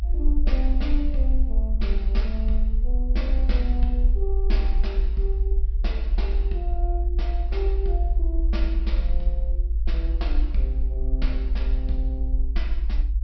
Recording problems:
treble missing; nothing above 5.5 kHz
rumble; below 54 Hz, SNR -9 dB

